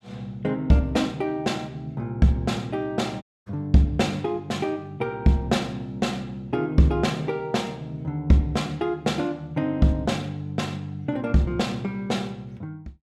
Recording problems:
dropout; at 3 s

